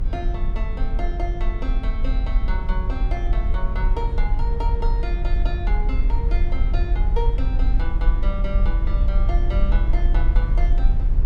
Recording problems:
rumble; below 46 Hz, strongest tone 26 Hz, SNR -10 dB

